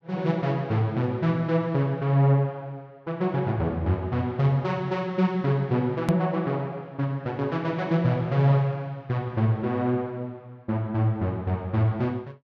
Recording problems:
click at an edit; at 6 s

